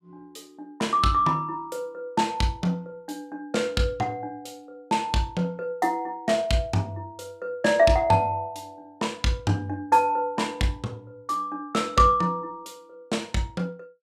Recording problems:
none

